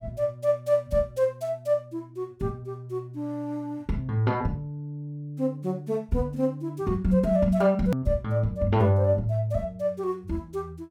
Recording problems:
click at an edit; at 8 s

